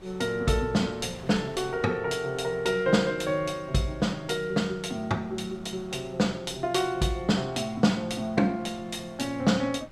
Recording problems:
wind on the microphone; below 960 Hz, SNR 23 dB

